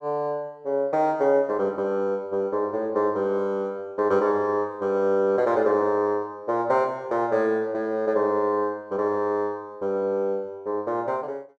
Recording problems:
none

